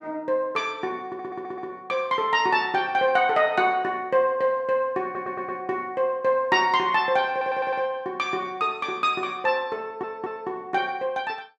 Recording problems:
audio stuttering; 4 times, first at 1 s

